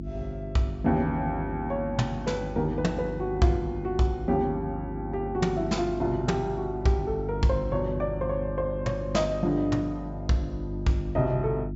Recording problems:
treble cut off; nothing above 8 kHz
hum; 50 Hz, harmonics up to 350 Hz, SNR 8 dB

